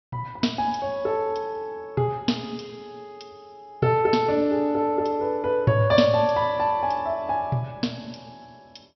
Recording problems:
treble missing; nothing above 5.8 kHz

